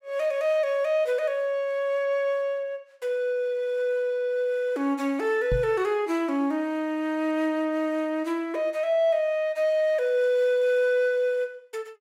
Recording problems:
knock on the microphone; at 5.5 s; peak 0 dB vs average level

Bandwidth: 16 kHz